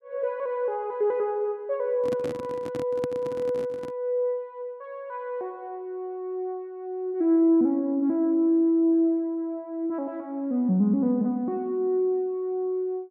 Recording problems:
handling noise; from 2 to 4 s; peak -4 dB vs average level

